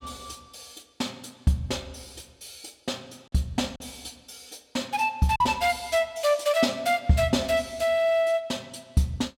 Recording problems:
packet loss; 1% of the sound replaced, filled with silence

